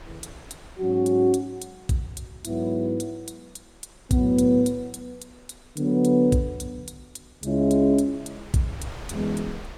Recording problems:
wind on the microphone; below 1.1 kHz, SNR 23 dB

